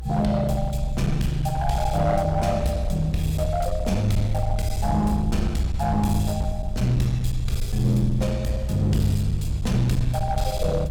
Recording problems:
distortion; hard clipping, uneven, signal-to-distortion ratio 9 dB
low-frequency rumble; below 64 Hz, SNR 6 dB
wind noise; below 250 Hz, SNR 20 dB

